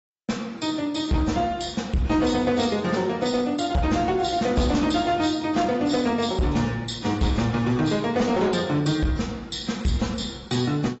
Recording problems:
codec artefacts; AAC, log-spectral distance 4 dB, nothing above 7.8 kHz
distorted audio; hard clipping, uneven, signal-to-distortion ratio 11 dB

